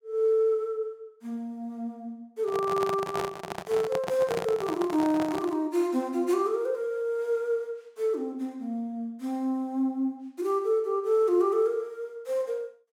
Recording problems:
microphone handling noise; from 2.5 to 5.5 s; peak -1 dB vs average level

